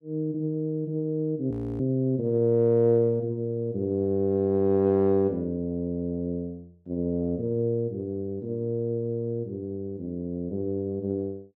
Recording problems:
audio freezing; at 1.5 s

